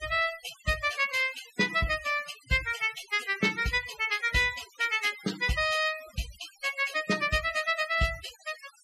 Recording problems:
denoising artefacts; signal-to-artefact ratio 14 dB

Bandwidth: 14.5 kHz